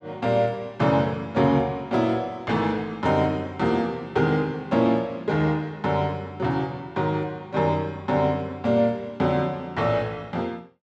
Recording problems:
none

